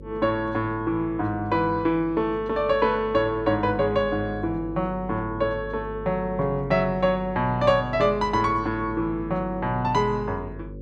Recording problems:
hum; 50 Hz, harmonics up to 550 Hz, SNR 15 dB

